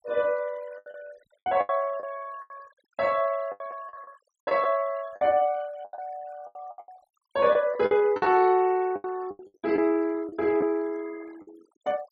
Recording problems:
denoising artefacts; signal-to-artefact ratio 25 dB
packet loss; 13% of the sound replaced, filled with the last packet

